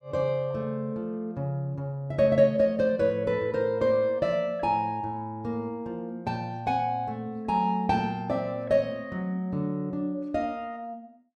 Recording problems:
none

